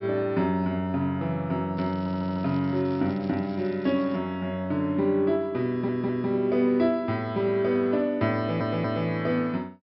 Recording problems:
treble missing; nothing above 5.5 kHz
crackling; from 2 to 4 s; loose cable, SNR 27 dB
stutter; at 2 s, at 5.5 s and at 8.5 s

